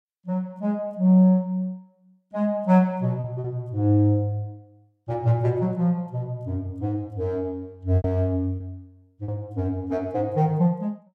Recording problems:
lost packets; 3% of the sound replaced, filled with repeated pitch periods

